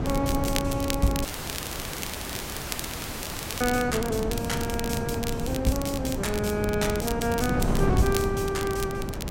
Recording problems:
wind on the microphone; below 310 Hz, SNR 3 dB
crackling; vinyl, SNR 8 dB
dropout; at 1.5 s for 2.5 s

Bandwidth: 16 kHz